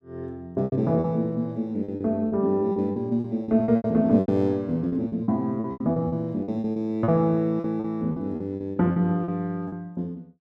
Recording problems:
lost packets; 14% of the sound replaced, filled with repeated pitch periods

